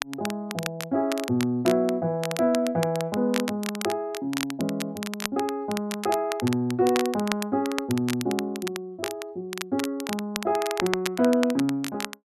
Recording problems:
crackle; vinyl, SNR 8 dB

